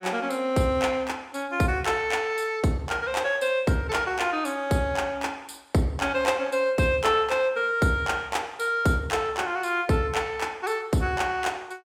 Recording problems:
none

